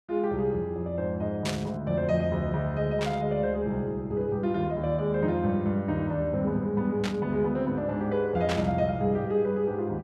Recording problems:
static burst; 4 times, first at 1.5 s; peak -1 dB vs average level

